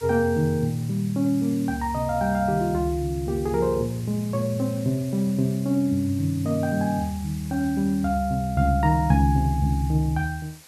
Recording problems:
hiss; slope 0 dB per octave, SNR 21 dB

